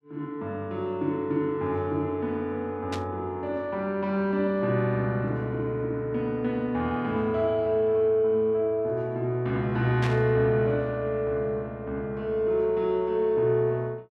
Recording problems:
static burst; at 3 s and at 10 s; peak -4 dB vs average level

